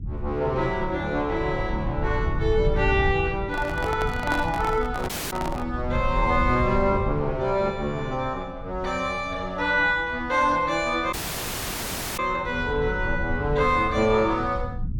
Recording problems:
rumble; below 110 Hz, SNR 8 dB
handling noise; from 3.5 to 5.5 s; peak -1 dB vs average level
dropout; at 5 s and at 11 s for 1 s

